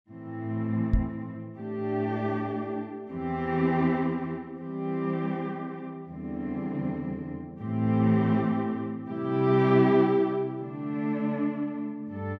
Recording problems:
knock on the microphone; at 1 s; peak +6 dB vs average level

